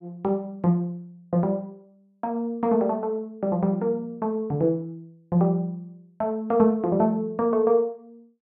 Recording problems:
none

